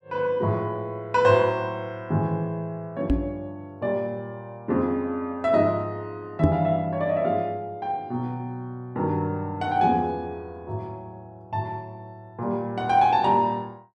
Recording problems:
microphone bump; at 3 s and at 6.5 s; peak +7 dB vs average level

